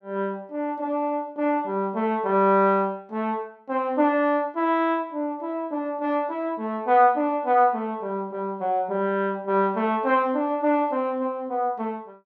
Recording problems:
none

